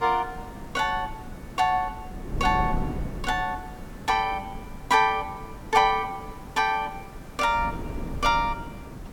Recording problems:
background hiss; slope -6 dB per octave, SNR 21 dB
wind on the microphone; below 230 Hz, SNR 12 dB

